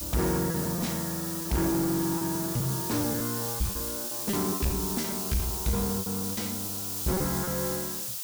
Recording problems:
distorted audio; soft clipping, signal-to-distortion ratio 7 dB
hiss; SNR 1 dB
lost packets; 15% of the sound replaced, filled with repeated pitch periods

